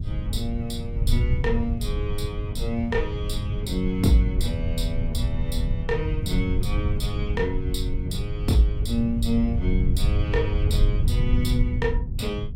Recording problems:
rumble; below 100 Hz, SNR -1 dB

